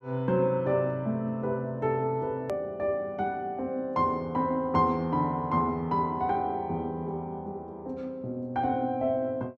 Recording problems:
click at an edit; at 2.5 s

